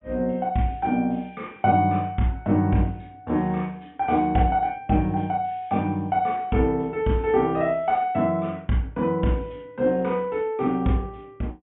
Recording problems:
treble missing; nothing above 3.5 kHz

